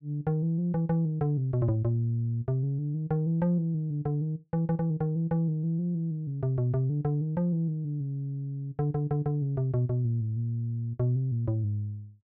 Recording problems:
none

